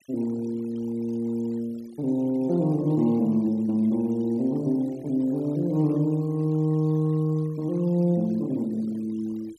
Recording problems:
denoising artefacts; signal-to-artefact ratio 27 dB

